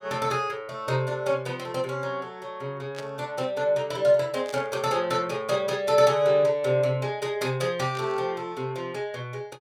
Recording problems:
burst of static; at 3 s, at 4.5 s and at 8 s; peak -9 dB vs average level

